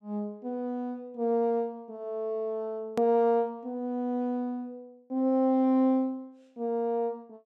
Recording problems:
hard cut with a click; at 3 s

